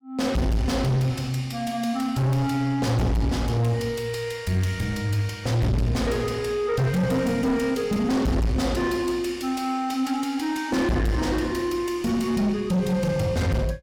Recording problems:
distorted audio; soft clipping, signal-to-distortion ratio 7 dB

